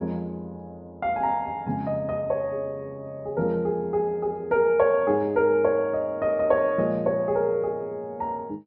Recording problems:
low-pass filter; nothing above 5.5 kHz

